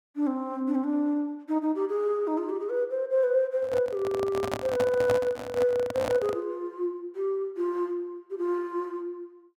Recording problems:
microphone handling noise; from 3.5 to 6.5 s; peak +2 dB vs average level

